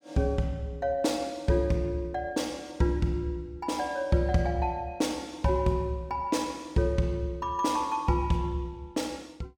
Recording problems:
none

